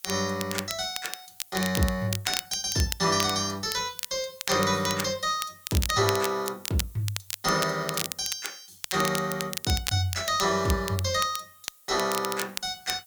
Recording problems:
hiss; slope +2 dB per octave, SNR 24 dB
crackle; vinyl, SNR 7 dB

